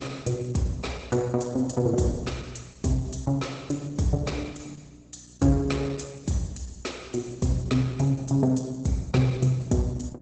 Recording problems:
lossy compression; Opus, log-spectral distance 5 dB, nothing above 8 kHz
electrical hum; 60 Hz, harmonics up to 720 Hz, SNR 25 dB

